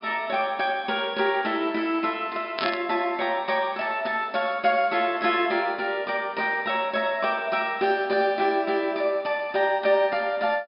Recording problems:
treble cut off; nothing above 5.5 kHz
static burst; at 2.5 s; peak -2 dB vs average level

